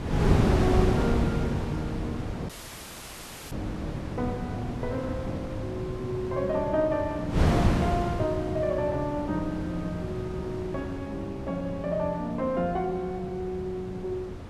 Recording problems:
wind noise; below 370 Hz, SNR 0 dB
audio cutting out; at 2.5 s for 1 s

